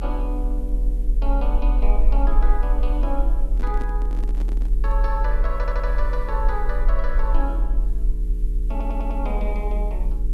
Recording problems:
electrical hum; 60 Hz, harmonics up to 480 Hz, SNR 8 dB
hiss; slope -1 dB per octave, SNR 27 dB
low-frequency rumble; below 42 Hz, strongest tone 40 Hz, SNR -7 dB
handling noise; from 3.5 to 5 s; peak -1 dB vs average level
audio stuttering; at 5.5 s and at 8.5 s

